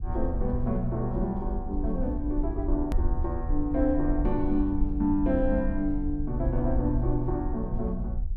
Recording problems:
low-frequency rumble; below 58 Hz, SNR 4 dB
click at an edit; at 3 s

